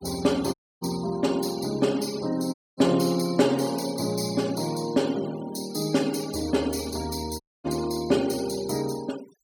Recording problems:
denoising artefacts; signal-to-artefact ratio 17 dB
dropout; at 0.5 s, at 2.5 s and at 7.5 s

